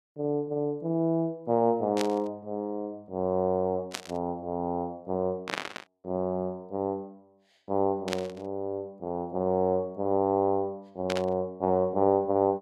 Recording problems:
burst of static; 5 times, first at 2 s; peak +2 dB vs average level

